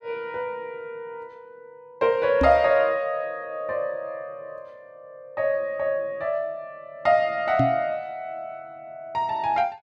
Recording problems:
microphone bump; at 2.5 s and at 7.5 s; peak +4 dB vs average level

